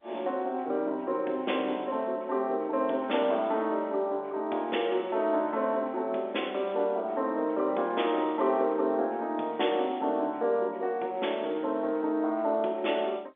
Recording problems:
telephone audio; 260 Hz to 3.5 kHz, G.711

